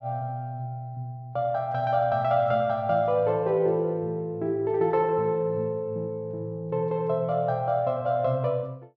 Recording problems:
none

